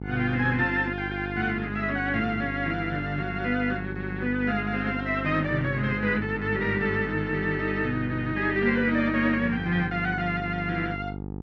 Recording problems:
mains hum; 50 Hz, harmonics up to 950 Hz, SNR 8 dB

